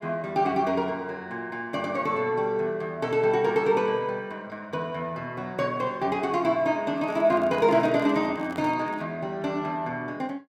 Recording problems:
microphone handling noise; from 7 to 9 s; peak -9 dB vs average level

